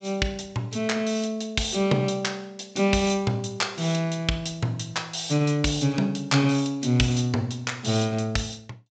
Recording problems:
treble cut off; nothing above 8 kHz

